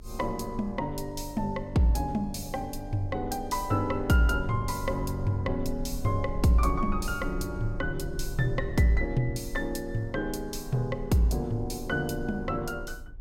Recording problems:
rumble; below 50 Hz, SNR 12 dB

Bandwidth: 16 kHz